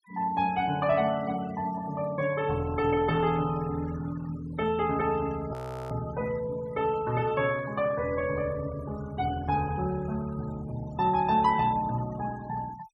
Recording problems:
noise reduction artefacts; signal-to-artefact ratio 18 dB
frozen audio; at 5.5 s

